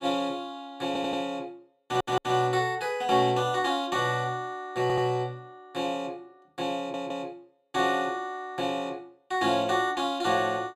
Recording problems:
audio stuttering; 4 times, first at 1 s

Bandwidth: 15 kHz